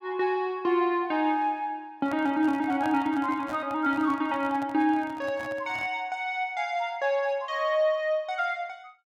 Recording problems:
handling noise; from 2 to 6 s; peak -7 dB vs average level

